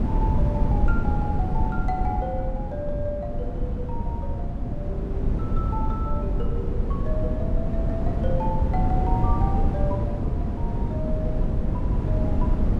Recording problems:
wind noise; below 160 Hz, SNR -8 dB

